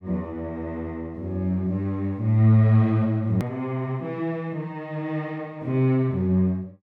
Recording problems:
hard cut with a click; at 3.5 s

